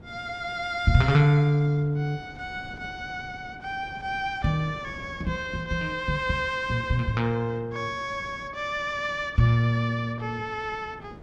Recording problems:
wind on the microphone; below 370 Hz, SNR 20 dB

